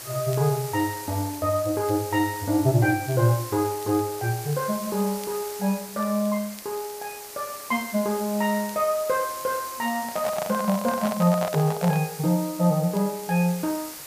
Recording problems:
hiss; slope -1 dB per octave, SNR 12 dB
crackle; vinyl, SNR 28 dB
handling noise; from 10 to 12 s; peak -1 dB vs average level

